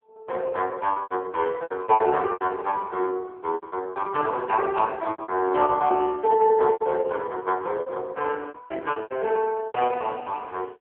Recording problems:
phone line; 320 Hz to 3 kHz, AMR-NB
packet loss; 13% of the sound replaced, filled with repeated pitch periods

